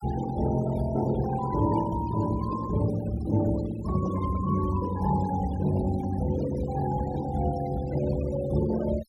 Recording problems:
denoising artefacts; signal-to-artefact ratio 15 dB

